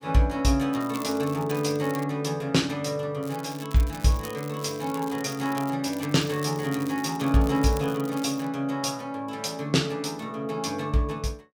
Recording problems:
crackle; from 0.5 to 2 s, from 3 to 5.5 s and from 6 to 8.5 s; loose cable, SNR 17 dB

